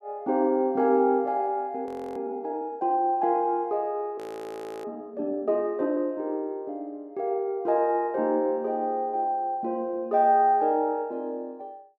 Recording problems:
frozen audio; at 2 s and at 4 s for 0.5 s

